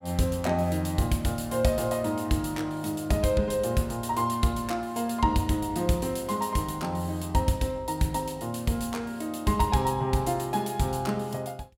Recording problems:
none

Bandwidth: 16.5 kHz